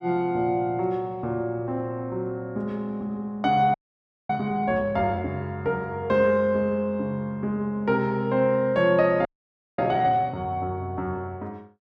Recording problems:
audio freezing; at 3.5 s for 0.5 s and at 9.5 s for 0.5 s

